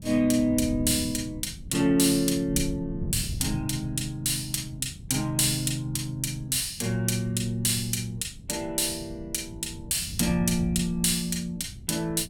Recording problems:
wind on the microphone; below 160 Hz, SNR 13 dB

